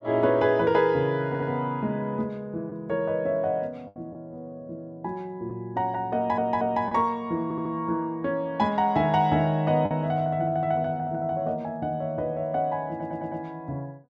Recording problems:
lost packets; 1.7% of the sound replaced, filled with the last packet
audio stuttering; 4 times, first at 1.5 s

